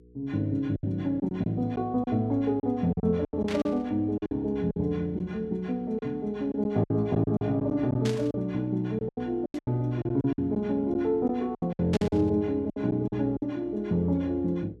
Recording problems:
hum; 60 Hz, harmonics up to 480 Hz, SNR 26 dB
lost packets; 11% of the sound replaced, filled with silence
static burst; 4 times, first at 3.5 s; peak -4 dB vs average level

